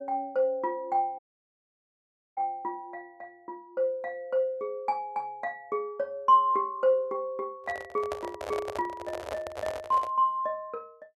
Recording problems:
dropout; at 1 s for 1 s
microphone handling noise; from 7.5 to 10 s; peak -2 dB vs average level

